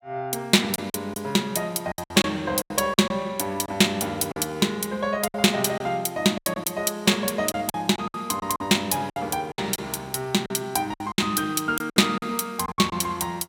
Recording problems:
lost packets; 10% of the sound replaced, filled with silence

